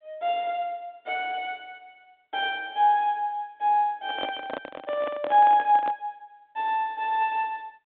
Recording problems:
phone line; 240 Hz to 3.7 kHz, G.726
handling noise; from 4 to 6 s; peak -4 dB vs average level

